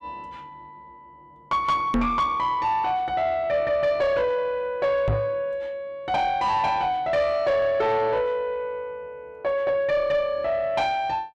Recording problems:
distortion; soft clipping, signal-to-distortion ratio 11 dB
microphone thump; at 2 s and at 5 s; peak +4 dB vs average level

